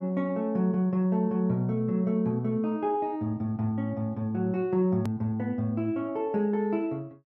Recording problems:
hard cut with a click; at 5 s

